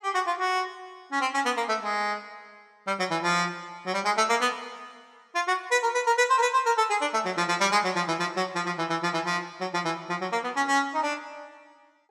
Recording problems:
none

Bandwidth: 14.5 kHz